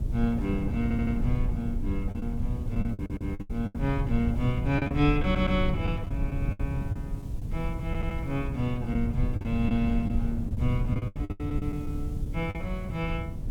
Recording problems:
hiss; slope -1 dB per octave, SNR 29 dB
low-frequency rumble; below 110 Hz, SNR 2 dB
wind noise; below 310 Hz, SNR 21 dB
lost packets; 9% of the sound replaced, filled with the last packet
audio stuttering; 4 times, first at 1 s

